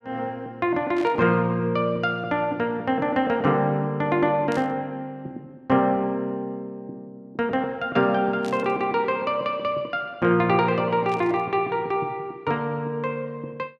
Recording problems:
static burst; 4 times, first at 1 s; peak -12 dB vs average level

